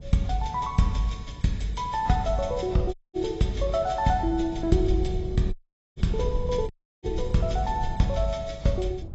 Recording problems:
codec artefacts; AAC, log-spectral distance 2 dB, nothing above 7.8 kHz
rumble; below 110 Hz, SNR 10 dB
audio cutting out; at 3 s, at 5.5 s and at 6.5 s

